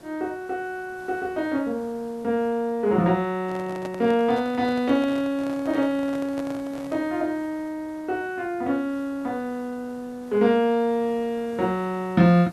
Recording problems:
background hiss; slope -6 dB per octave, SNR 24 dB
handling noise; from 3.5 to 7 s; peak -7 dB vs average level

